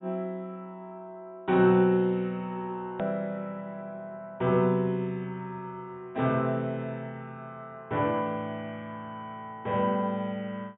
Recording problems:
treble missing; nothing above 4 kHz
edit click; at 3 s

